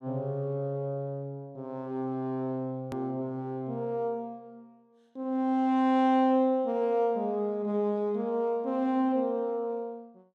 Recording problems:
hard cut with a click; at 3 s

